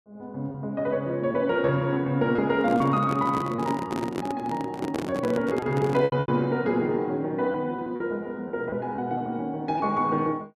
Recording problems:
packet loss; 6% of the sound replaced, filled with repeated pitch periods
handling noise; from 2.5 to 6 s; peak 0 dB vs average level

